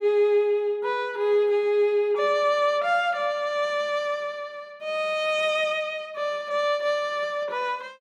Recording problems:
none

